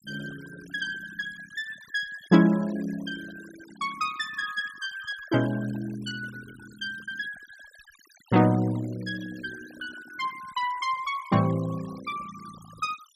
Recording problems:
denoising artefacts; signal-to-artefact ratio 20 dB

